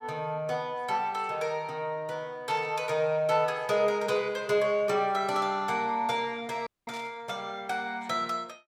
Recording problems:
static burst; at 2.5 s, at 4 s and at 7 s; peak -10 dB vs average level
dropout; at 6.5 s

